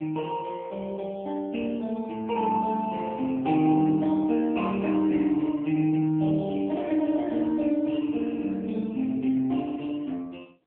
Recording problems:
telephone audio; 220 Hz to 3.5 kHz, AMR-NB

